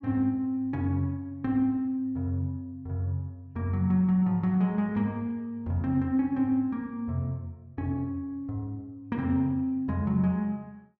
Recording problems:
none

